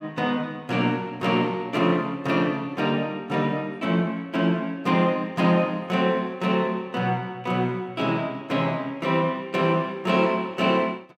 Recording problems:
none

